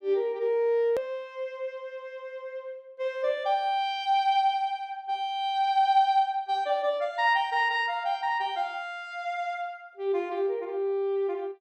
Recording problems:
edit click; at 1 s

